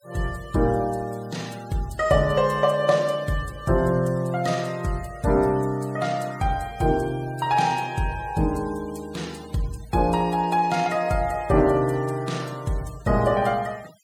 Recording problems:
denoising artefacts; signal-to-artefact ratio 22 dB

